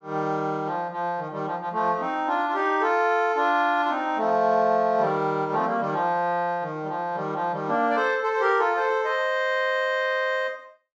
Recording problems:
none

